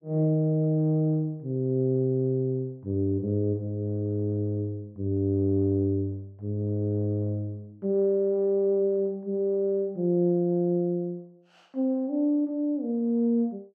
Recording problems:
none

